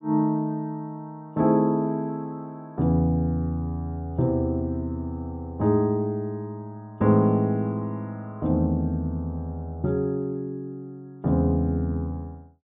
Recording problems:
low-pass filter; nothing above 4 kHz

